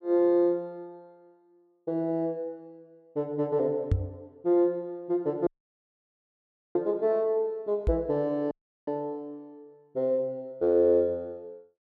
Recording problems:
microphone thump; at 4 s and at 8 s; peak +6 dB vs average level
dropout; at 5.5 s for 1.5 s and at 8.5 s

